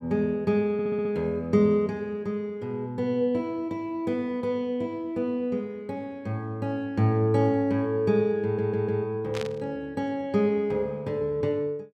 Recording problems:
stutter; at 0.5 s and at 8.5 s
static burst; at 9.5 s; peak -6 dB vs average level

